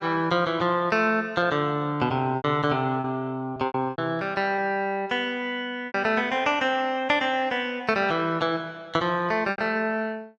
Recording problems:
lost packets; 5% of the sound replaced, filled with repeated pitch periods

